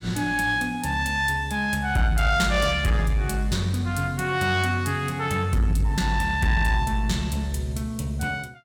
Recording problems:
distortion; soft clipping, signal-to-distortion ratio 12 dB

